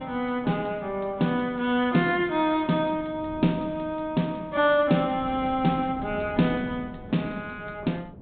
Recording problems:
low-pass filter; nothing above 4 kHz
wind on the microphone; below 310 Hz, SNR 18 dB

